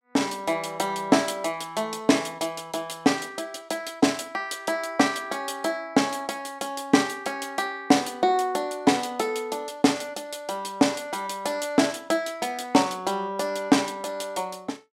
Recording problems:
none

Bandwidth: 16 kHz